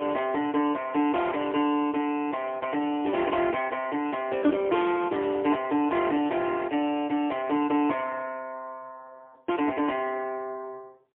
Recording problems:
telephone audio; 260 Hz to 3.3 kHz, AMR-NB, then MP3

